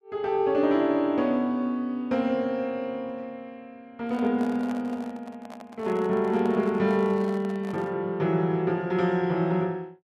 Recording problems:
microphone handling noise; from 4 to 8 s; peak -10 dB vs average level

